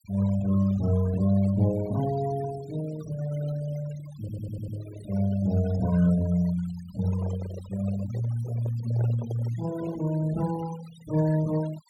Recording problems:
denoising artefacts; signal-to-artefact ratio 17 dB
audio stuttering; at 4 s
microphone handling noise; from 7 to 10 s; peak -9 dB vs average level

